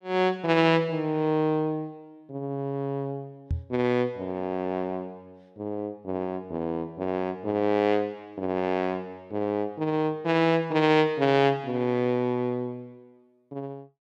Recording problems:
microphone bump; at 3.5 s; peak +1 dB vs average level

